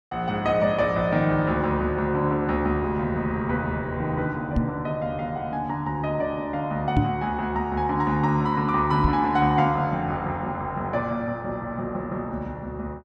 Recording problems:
microphone thump; at 4.5 s, at 7 s and at 9 s; peak +6 dB vs average level

